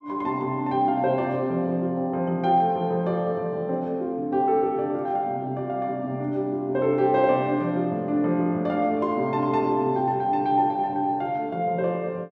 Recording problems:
none

